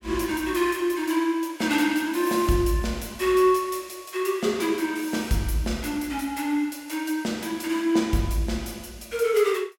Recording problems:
none

